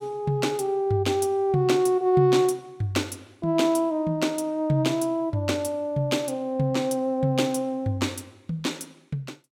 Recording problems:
none

